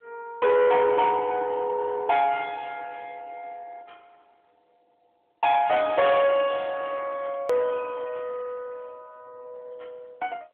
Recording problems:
phone line; 320 Hz to 3.5 kHz, AMR-NB
distortion; soft clipping, signal-to-distortion ratio 10 dB
click at an edit; at 7.5 s

